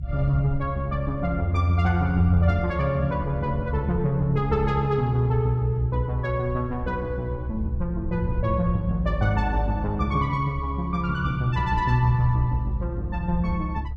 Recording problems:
low-frequency rumble; below 76 Hz, strongest tone 68 Hz, SNR 9 dB

